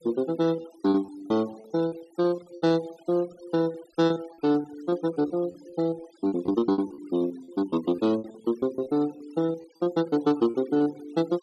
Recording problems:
denoising artefacts; signal-to-artefact ratio 21 dB
packet loss; 15% of the sound replaced, filled with repeated pitch periods

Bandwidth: 12.5 kHz